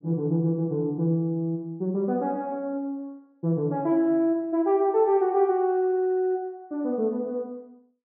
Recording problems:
treble missing; nothing above 5.5 kHz

